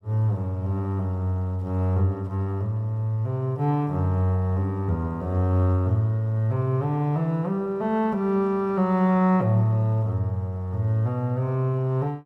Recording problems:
none

